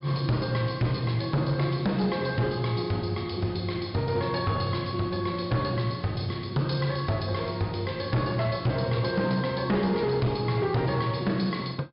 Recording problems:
treble missing; nothing above 5.5 kHz
distorted audio; hard clipping, signal-to-distortion ratio 11 dB

